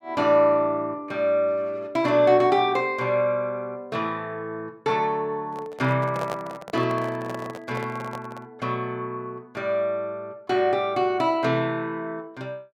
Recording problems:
handling noise; from 5.5 to 8.5 s; peak -4 dB vs average level

